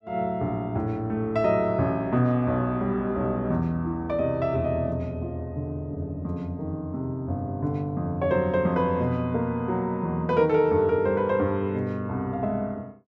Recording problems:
none

